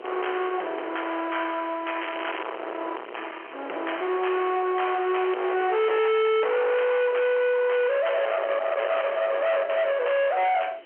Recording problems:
phone line; 320 Hz to 3.2 kHz, G.711
distortion; hard clipping, uneven, signal-to-distortion ratio 5 dB
background hiss; SNR 28 dB
wind noise; below 1.5 kHz, SNR 15 dB
crackling; at 2 s; loose cable, SNR 11 dB

